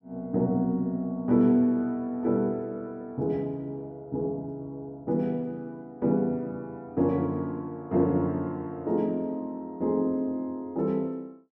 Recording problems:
none

